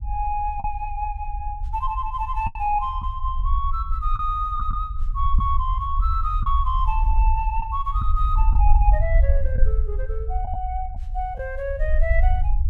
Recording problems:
rumble; below 56 Hz, SNR -2 dB
packet loss; 3% of the sound replaced, filled with the last packet

